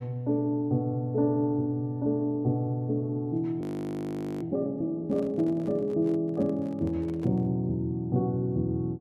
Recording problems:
frozen audio; at 3.5 s for 1 s
handling noise; from 5 to 7.5 s; peak -12 dB vs average level

